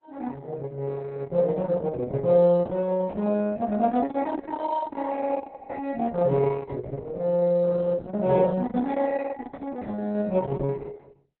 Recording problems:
lossy compression; Opus, log-spectral distance 3 dB, nothing above 4 kHz

